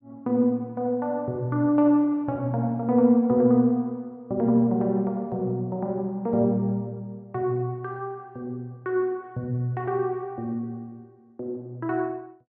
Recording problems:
low-pass filter; nothing above 8 kHz

